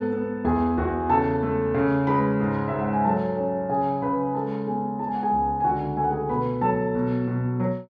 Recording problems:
none

